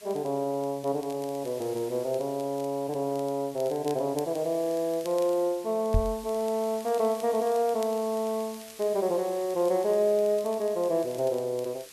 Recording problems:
hiss; slope +2 dB per octave, SNR 19 dB
crackling; vinyl, SNR 24 dB
microphone thump; at 6 s; peak +5 dB vs average level

